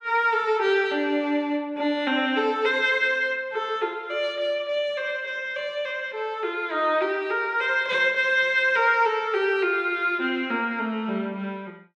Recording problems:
none

